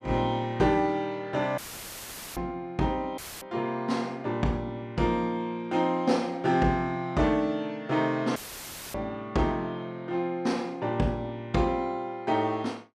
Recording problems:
dropout; at 1.5 s for 1 s, at 3 s and at 8.5 s for 0.5 s; filled with static

